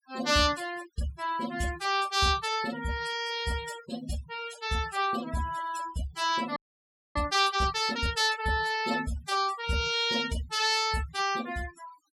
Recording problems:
noise reduction artefacts; signal-to-artefact ratio 13 dB
frozen audio; at 6.5 s for 0.5 s

